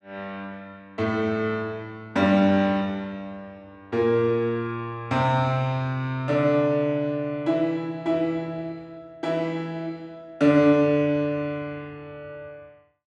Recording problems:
none

